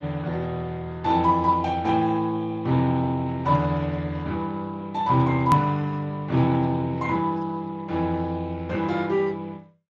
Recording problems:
codec artefacts; Speex, log-spectral distance 3 dB, nothing above 13.3 kHz
click at an edit; at 5.5 s

